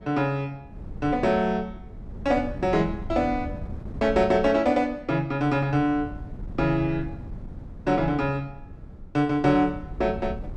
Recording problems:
wind on the microphone; below 160 Hz, SNR 14 dB

